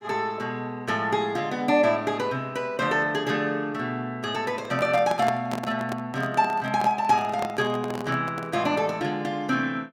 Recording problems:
handling noise; from 4.5 to 8.5 s; peak 0 dB vs average level

